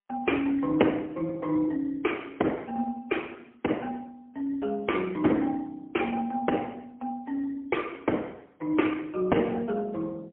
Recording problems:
telephone audio; 220 Hz to 3.3 kHz, AMR-NB, then MP3

